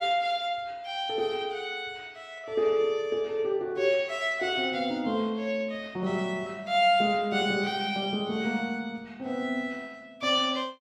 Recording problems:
none

